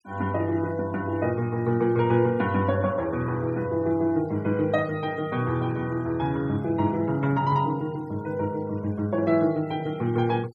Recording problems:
denoising artefacts; signal-to-artefact ratio 26 dB

